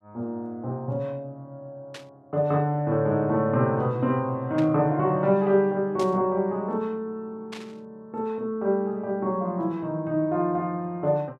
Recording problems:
burst of static; 4 times, first at 2 s; peak -10 dB vs average level

